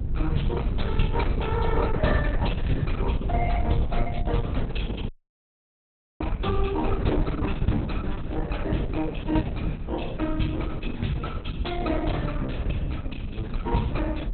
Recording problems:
lossy codec; Opus, log-spectral distance 4 dB, nothing above 4 kHz
hum; 50 Hz, harmonics up to 400 Hz, SNR 17 dB
rumble; below 84 Hz, SNR 2 dB
dropout; at 5 s for 1 s

